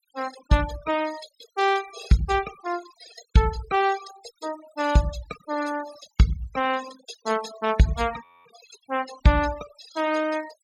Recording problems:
noise reduction artefacts; signal-to-artefact ratio 15 dB
audio freezing; at 8 s

